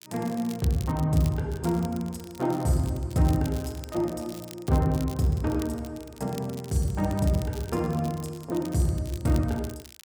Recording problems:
crackling; vinyl, SNR 18 dB

